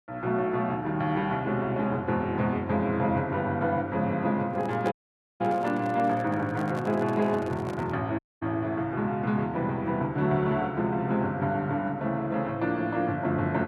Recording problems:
handling noise; from 4.5 to 8 s; peak -6 dB vs average level
audio cutting out; at 5 s and at 8 s

